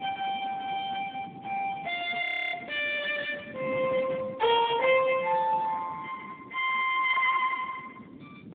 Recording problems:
phone line; 240 Hz to 3.5 kHz, Speex
hiss; SNR 41 dB
wind noise; below 320 Hz, SNR 17 dB
audio freezing; at 2.5 s

